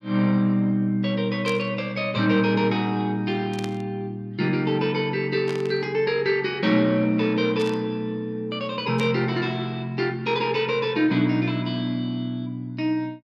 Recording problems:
burst of static; 5 times, first at 1.5 s; peak -7 dB vs average level

